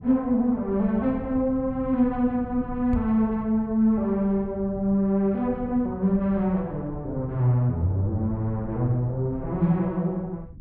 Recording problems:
rumble; below 160 Hz, SNR 16 dB
microphone bump; at 3 s; peak +1 dB vs average level

